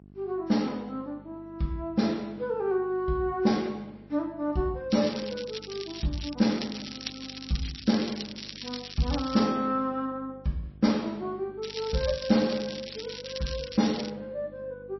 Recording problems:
lossy codec; MP3, log-spectral distance 9 dB, nothing above 5.8 kHz
hum; 50 Hz, harmonics up to 750 Hz, SNR 23 dB
crackling; from 5 to 9.5 s and from 12 to 14 s; loose cable, SNR 10 dB

